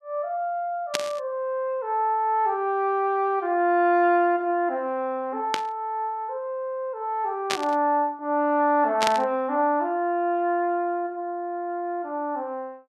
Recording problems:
burst of static; 4 times, first at 1 s; peak +4 dB vs average level

